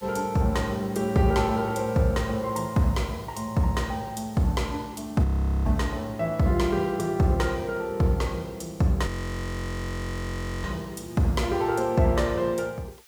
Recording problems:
background hiss; slope +3 dB per octave, SNR 26 dB
frozen audio; at 5 s and at 9 s for 1.5 s

